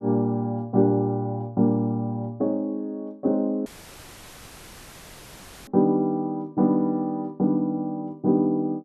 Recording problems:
audio cutting out; at 3.5 s for 2 s; filled with static

